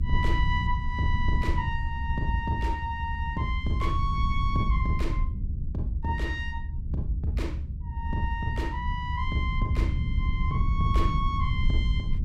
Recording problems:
rumble; below 90 Hz, SNR -1 dB

